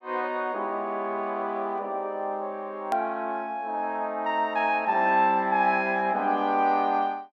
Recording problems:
hard cut with a click; at 3 s

